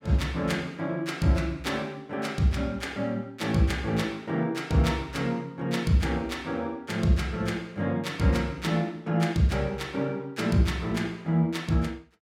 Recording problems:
none

